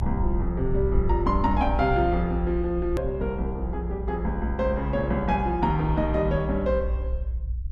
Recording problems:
low-frequency rumble; below 62 Hz, strongest tone 60 Hz, SNR 4 dB
click at an edit; at 3 s

